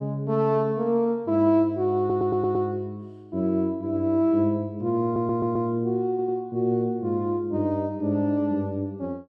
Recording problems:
audio stuttering; at 2 s, at 5 s and at 6 s

